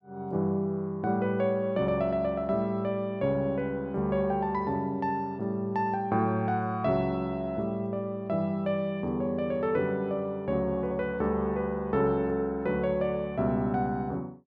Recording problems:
none

